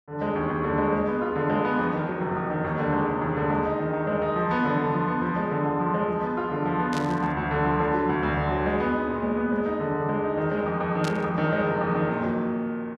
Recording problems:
burst of static; at 7 s and at 11 s; peak -6 dB vs average level

